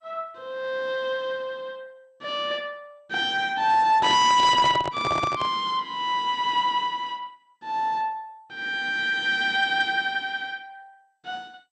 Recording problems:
lossy codec; MP2, log-spectral distance 2 dB, nothing above 7.8 kHz
distortion; hard clipping, signal-to-distortion ratio 11 dB
handling noise; from 4 to 5.5 s; peak -1 dB vs average level

